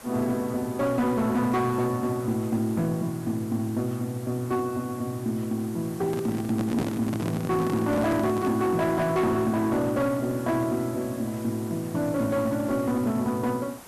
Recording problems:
distorted audio; hard clipping, uneven, signal-to-distortion ratio 12 dB
background hiss; SNR 18 dB
handling noise; from 6 to 8.5 s; peak +1 dB vs average level

